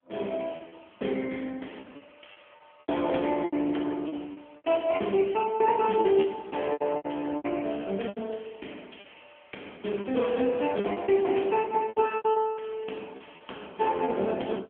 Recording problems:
telephone audio; 220 Hz to 3.3 kHz, AMR-NB
packet loss; 11% of the sound replaced, filled with repeated pitch periods

